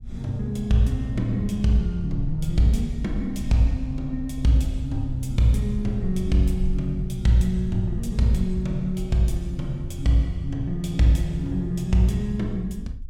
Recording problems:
low-frequency rumble; below 56 Hz, SNR 11 dB

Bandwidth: 17.5 kHz